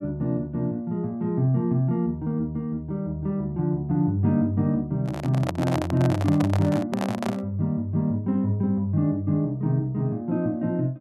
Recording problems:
handling noise; from 5 to 7.5 s; peak +1 dB vs average level

